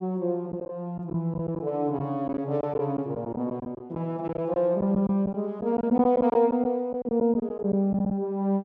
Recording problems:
lost packets; 9% of the sound replaced, filled with silence

